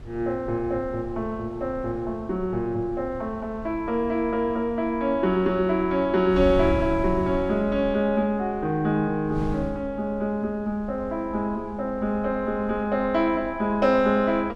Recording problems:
wind on the microphone; below 130 Hz, SNR 15 dB

